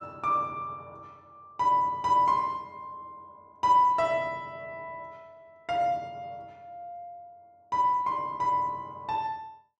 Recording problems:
none

